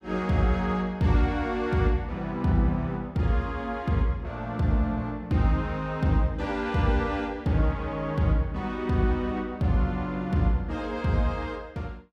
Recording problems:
none

